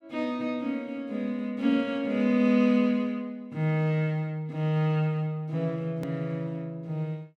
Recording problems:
edit click; at 6 s

